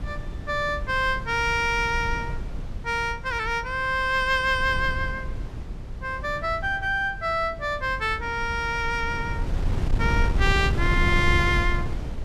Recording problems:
wind on the microphone; below 110 Hz, SNR 6 dB

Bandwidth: 14.5 kHz